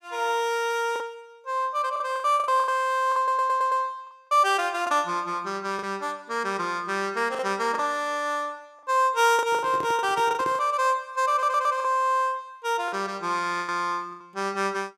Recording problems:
lost packets; 8% of the sound replaced, filled with the last packet
stutter; at 3 s and at 11 s
microphone handling noise; from 9.5 to 11 s; peak -7 dB vs average level

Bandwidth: 15.5 kHz